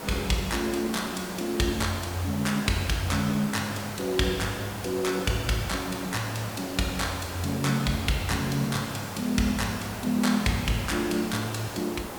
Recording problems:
background hiss; slope -5 dB per octave, SNR 9 dB

